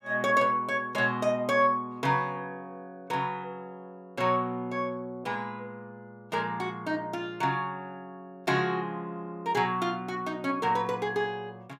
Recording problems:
none

